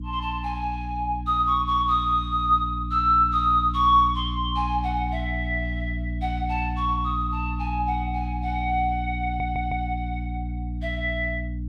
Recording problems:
electrical hum; 60 Hz, harmonics up to 300 Hz, SNR 6 dB
stutter; at 9 s

